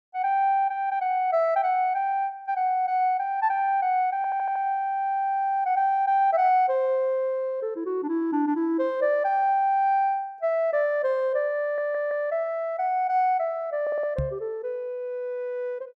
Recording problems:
stutter; at 4 s, at 12 s and at 14 s
microphone bump; at 14 s; peak -1 dB vs average level

